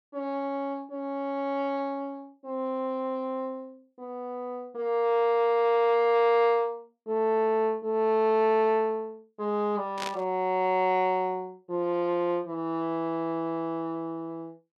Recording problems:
static burst; at 10 s; peak -3 dB vs average level

